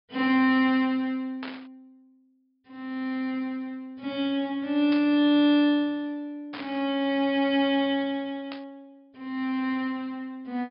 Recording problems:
low-pass filter; nothing above 5.5 kHz
static burst; 4 times, first at 1.5 s; peak -8 dB vs average level

